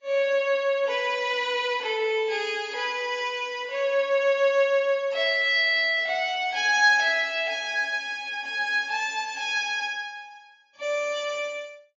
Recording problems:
lossy codec; AAC, log-spectral distance 2 dB, nothing above 6.9 kHz

